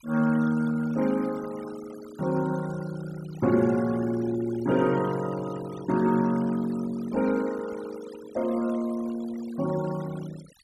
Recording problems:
denoising artefacts; signal-to-artefact ratio 18 dB

